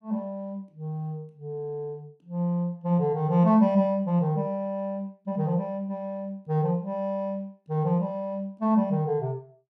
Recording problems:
none

